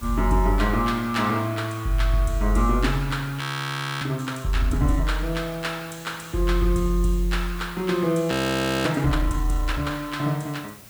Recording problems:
background hiss; slope -2 dB per octave, SNR 20 dB
frozen audio; at 3.5 s for 0.5 s and at 8.5 s for 0.5 s

